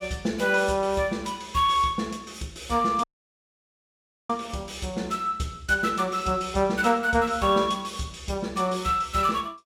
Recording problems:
audio cutting out; at 3 s for 1.5 s

